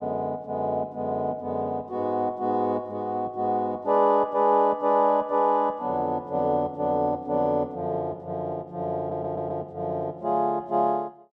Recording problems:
stutter; at 9 s

